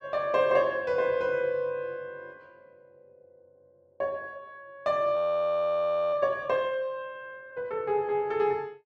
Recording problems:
audio freezing; at 5 s for 1 s

